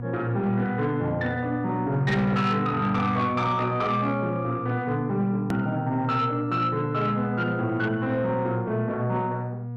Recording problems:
distorted audio; soft clipping, signal-to-distortion ratio 12 dB
electrical hum; 60 Hz, harmonics up to 720 Hz, SNR 8 dB
click at an edit; at 5.5 s

